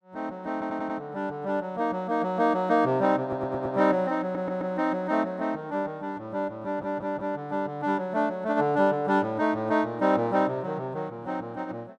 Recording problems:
stutter; 4 times, first at 0.5 s

